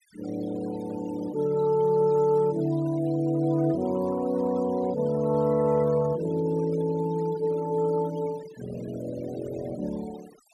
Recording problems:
noise reduction artefacts; signal-to-artefact ratio 20 dB

